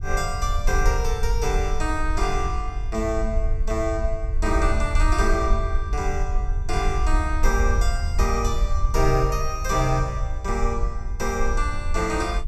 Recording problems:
rumble; below 58 Hz, SNR 0 dB

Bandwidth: 14 kHz